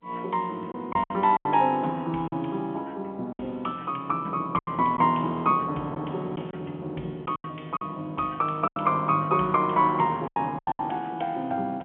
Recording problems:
phone line; 150 Hz to 3.5 kHz, G.711
packet loss; 7% of the sound replaced, filled with silence

